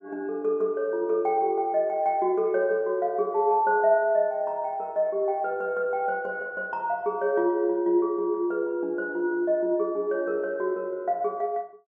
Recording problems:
none

